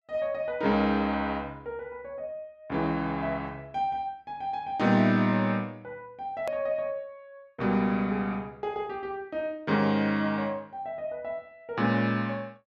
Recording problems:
click at an edit; at 6.5 s

